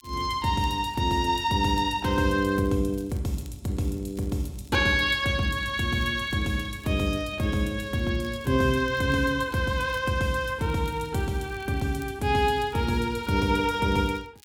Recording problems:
crackle; vinyl, SNR 29 dB

